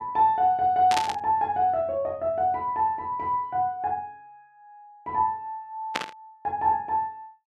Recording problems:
static burst; at 1 s and at 6 s; peak +3 dB vs average level

